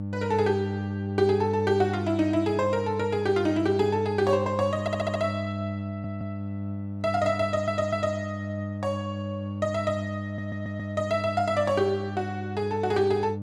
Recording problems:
hum; 50 Hz, harmonics up to 600 Hz, SNR 6 dB
audio stuttering; 4 times, first at 5 s

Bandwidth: 12.5 kHz